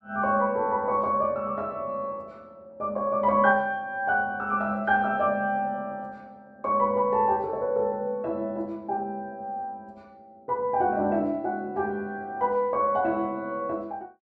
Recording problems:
none

